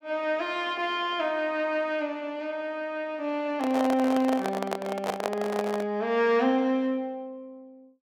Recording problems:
microphone handling noise; from 3.5 to 6 s; peak +2 dB vs average level

